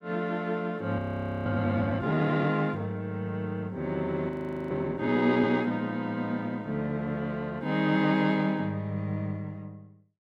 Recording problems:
audio freezing; at 1 s and at 4.5 s

